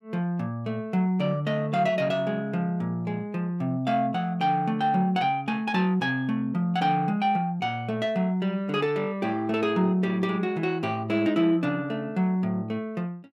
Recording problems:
none

